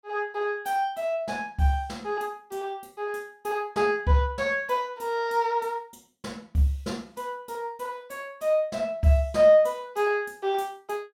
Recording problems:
none

